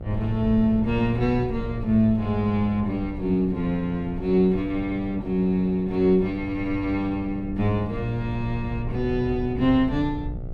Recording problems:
hum; 60 Hz, harmonics up to 840 Hz, SNR 17 dB
rumble; below 100 Hz, SNR 13 dB

